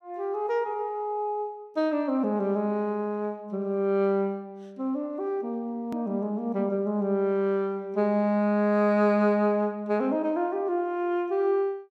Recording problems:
hard cut with a click; at 6 s

